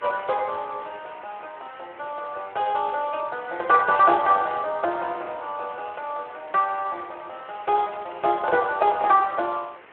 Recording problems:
telephone audio; 300 Hz to 3.2 kHz, Speex
hiss; SNR 23 dB

